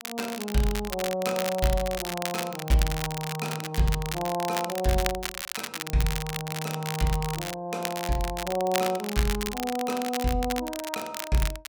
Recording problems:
crackling; vinyl, SNR 5 dB

